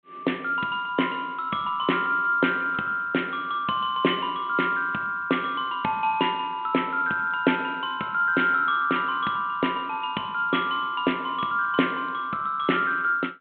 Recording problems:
telephone audio; 220 Hz to 3.4 kHz, G.726

